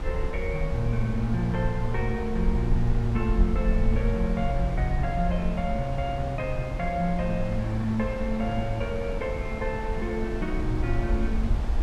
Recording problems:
rumble; below 56 Hz, SNR 3 dB
wind on the microphone; below 530 Hz, SNR 8 dB

